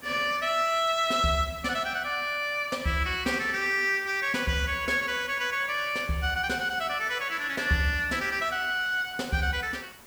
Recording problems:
background hiss; slope -3 dB per octave, SNR 21 dB

